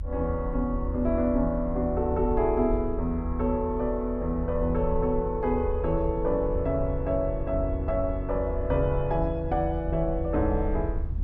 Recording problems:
low-frequency rumble; below 76 Hz, SNR 6 dB

